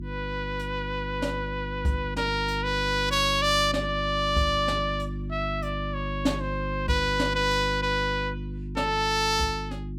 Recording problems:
hum; 50 Hz, harmonics up to 350 Hz, SNR 7 dB

